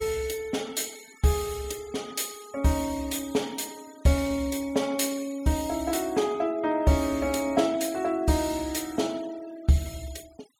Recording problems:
noise reduction artefacts; signal-to-artefact ratio 21 dB

